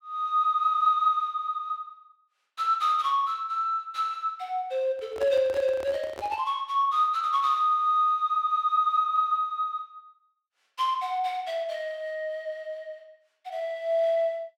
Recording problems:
handling noise; from 5 to 6.5 s; peak -8 dB vs average level

